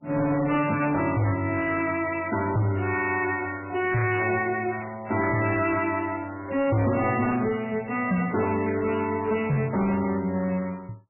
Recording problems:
lossy codec; MP3, log-spectral distance 8 dB, nothing above 2.7 kHz
distorted audio; hard clipping, signal-to-distortion ratio 10 dB

